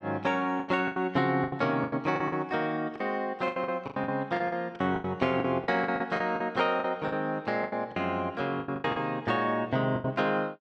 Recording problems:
packet loss; 15% of the sound replaced, filled with the last packet

